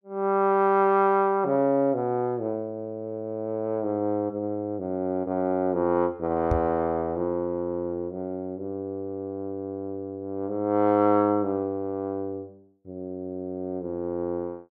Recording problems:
microphone thump; at 6.5 s; peak +4 dB vs average level

